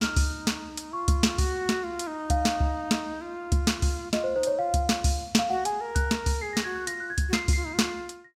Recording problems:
none

